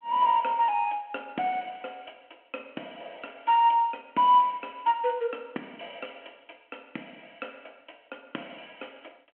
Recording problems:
telephone audio; 220 Hz to 3.6 kHz, G.726

